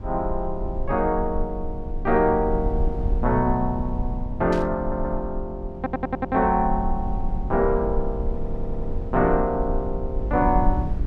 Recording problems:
low-frequency rumble; below 62 Hz, SNR 6 dB
static burst; at 4.5 s; peak -9 dB vs average level
stutter; at 5 s, at 6 s and at 8.5 s

